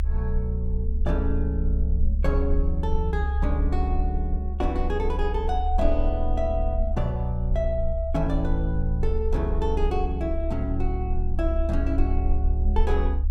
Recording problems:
low-frequency rumble; below 68 Hz, SNR -2 dB

